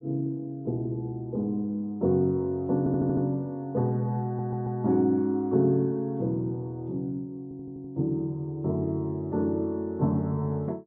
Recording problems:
audio stuttering; at 3 s, at 4.5 s and at 7.5 s

